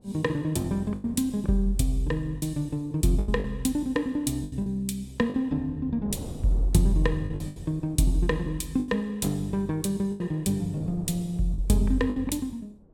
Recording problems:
wind noise; below 340 Hz, SNR 19 dB
packet loss; 7% of the sound replaced, filled with the last packet

